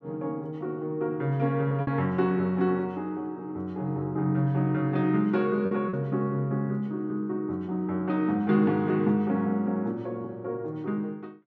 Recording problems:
lost packets; 1.5% of the sound replaced, filled with repeated pitch periods

